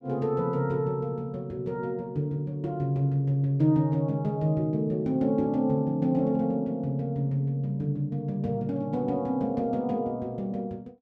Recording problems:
none

